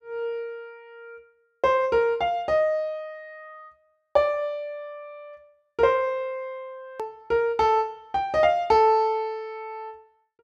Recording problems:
edit click; at 7 s

